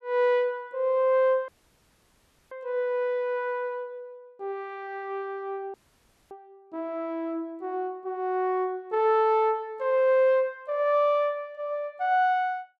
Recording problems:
dropout; at 1.5 s for 1 s and at 5.5 s for 0.5 s

